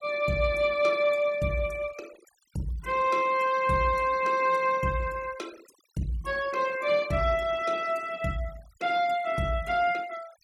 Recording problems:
denoising artefacts; signal-to-artefact ratio 21 dB

